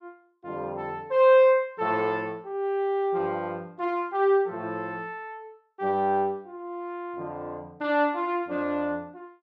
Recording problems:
none

